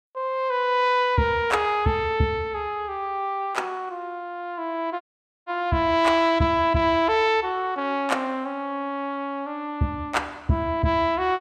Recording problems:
audio cutting out; at 5 s

